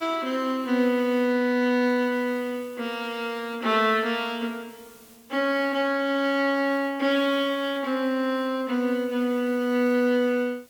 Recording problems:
hiss; slope -2 dB per octave, SNR 27 dB

